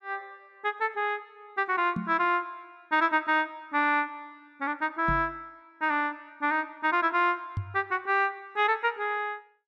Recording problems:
microphone bump; at 2 s, at 5 s and at 7.5 s; peak 0 dB vs average level

